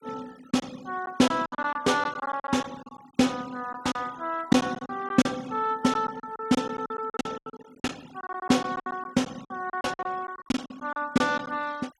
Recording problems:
denoising artefacts; signal-to-artefact ratio 22 dB
packet loss; 13% of the sound replaced, filled with silence

